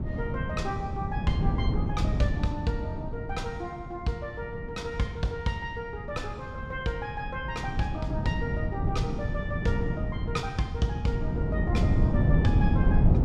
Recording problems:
wind noise; below 180 Hz, SNR -4 dB

